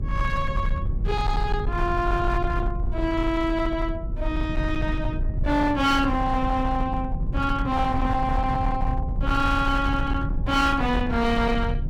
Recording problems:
distortion; hard clipping, uneven, signal-to-distortion ratio 12 dB
hum; 60 Hz, harmonics up to 1.1 kHz, SNR 22 dB
rumble; below 100 Hz, SNR 4 dB

